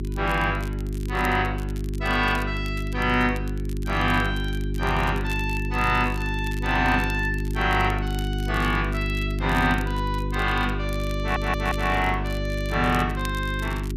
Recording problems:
electrical hum; 50 Hz, harmonics up to 400 Hz, SNR 3 dB
crackle; vinyl, SNR 20 dB
stutter; at 11 s

